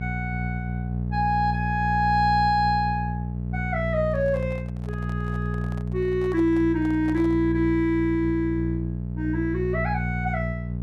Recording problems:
hum; 60 Hz, harmonics up to 600 Hz, SNR 4 dB
microphone handling noise; from 4 to 7.5 s; peak -12 dB vs average level

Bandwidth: 13 kHz